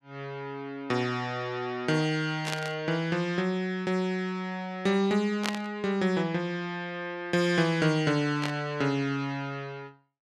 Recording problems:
burst of static; at 2.5 s, at 5.5 s and at 8.5 s; peak +2 dB vs average level

